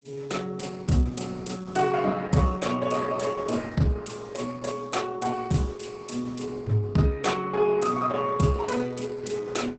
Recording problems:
codec artefacts; Opus, log-spectral distance 5 dB, nothing above 8 kHz

